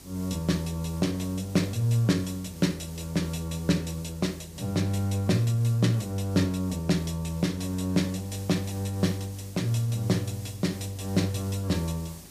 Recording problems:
electrical hum; 50 Hz, harmonics up to 400 Hz, SNR 25 dB
background hiss; SNR 19 dB

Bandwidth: 15 kHz